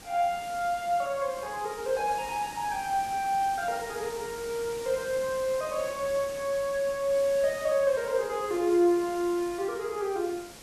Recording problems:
background hiss; slope -3 dB per octave, SNR 15 dB

